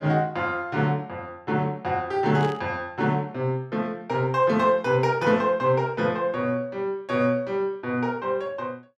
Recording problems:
static burst; at 2.5 s; peak -12 dB vs average level

